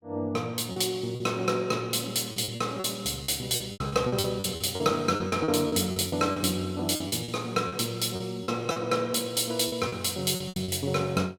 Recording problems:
packet loss; 13% of the sound replaced, filled with repeated pitch periods

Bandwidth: 17.5 kHz